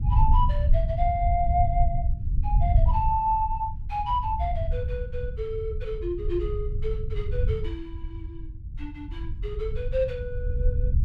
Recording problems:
rumble; below 76 Hz, SNR -1 dB

